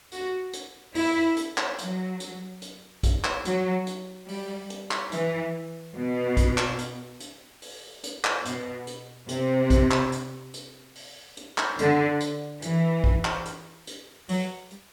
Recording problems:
hiss; slope -1 dB per octave, SNR 26 dB

